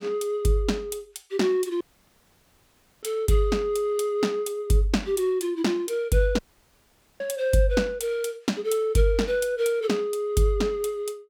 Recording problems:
dropout; at 2 s for 1 s and at 6.5 s for 1 s

